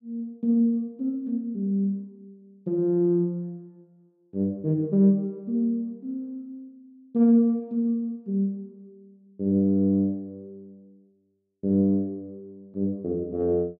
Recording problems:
none

